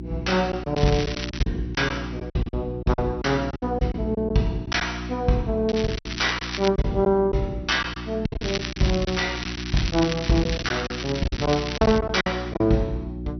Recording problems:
codec artefacts; MP2, log-spectral distance 6 dB, nothing above 6 kHz
hum; 60 Hz, harmonics up to 360 Hz, SNR 9 dB
packet loss; 10% of the sound replaced, filled with silence
crackling; at 1 s, from 5.5 to 6.5 s and from 8.5 to 12 s; loose cable, SNR 8 dB

